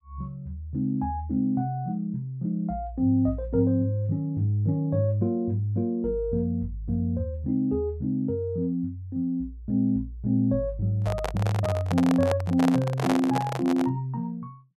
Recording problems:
microphone handling noise; from 11 to 14 s; peak +1 dB vs average level

